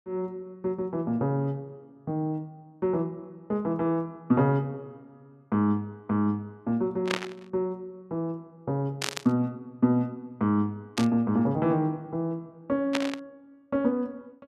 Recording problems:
burst of static; 4 times, first at 7 s; peak +3 dB vs average level

